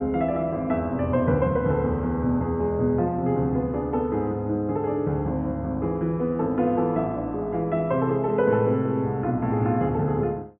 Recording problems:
low-pass filter; nothing above 3.4 kHz

